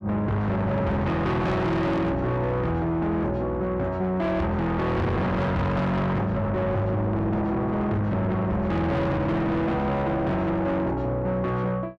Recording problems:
distortion; soft clipping, signal-to-distortion ratio 7 dB

